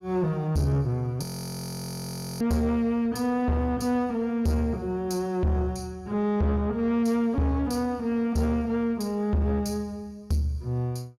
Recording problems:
distortion; soft clipping, signal-to-distortion ratio 11 dB
frozen audio; at 1 s for 1 s

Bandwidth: 16.5 kHz